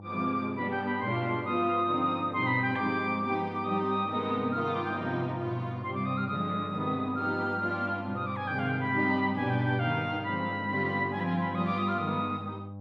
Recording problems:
electrical hum; 50 Hz, harmonics up to 1 kHz, SNR 14 dB

